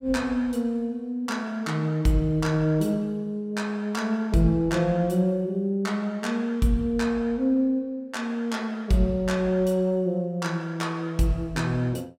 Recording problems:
none

